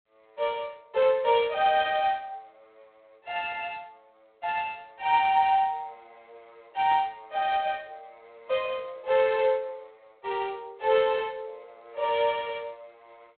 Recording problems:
phone line; 340 Hz to 3.5 kHz, G.726

